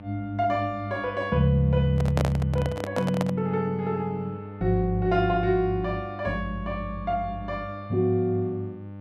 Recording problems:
hum; 50 Hz, harmonics up to 1.2 kHz, SNR 14 dB
microphone handling noise; from 2 to 3.5 s; peak +2 dB vs average level

